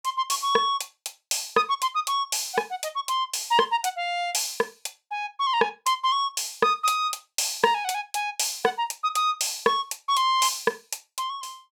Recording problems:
none

